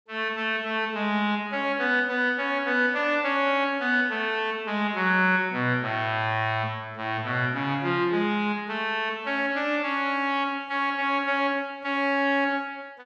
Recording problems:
none

